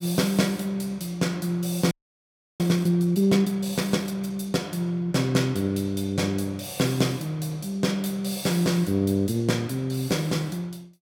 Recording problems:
frozen audio; at 2 s for 0.5 s

